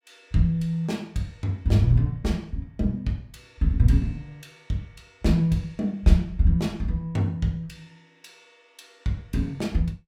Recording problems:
none

